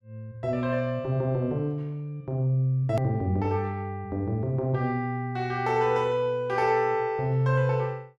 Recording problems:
hard cut with a click; at 3 s

